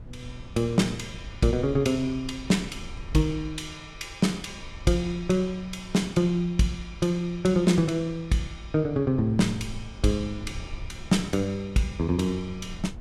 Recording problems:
wind on the microphone; below 110 Hz, SNR 17 dB

